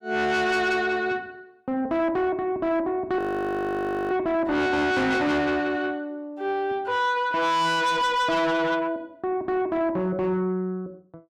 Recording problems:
distortion; soft clipping, signal-to-distortion ratio 7 dB
audio freezing; at 3 s for 1 s

